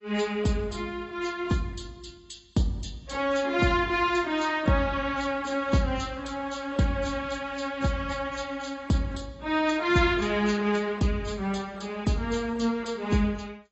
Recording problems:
codec artefacts; AAC, log-spectral distance 4 dB, nothing above 7.8 kHz

